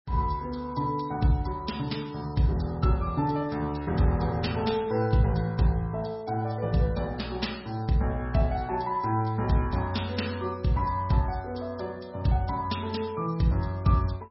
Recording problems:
lossy compression; MP3, log-spectral distance 4 dB, nothing above 5.5 kHz

